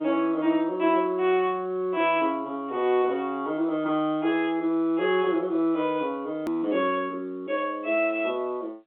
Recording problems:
telephone audio; 220 Hz to 3.6 kHz, G.711
edit click; at 6.5 s

